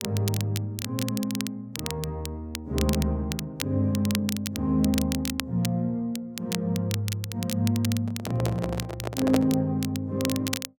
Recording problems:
crackling; vinyl, SNR 8 dB
microphone handling noise; from 8 to 9.5 s; peak +4 dB vs average level

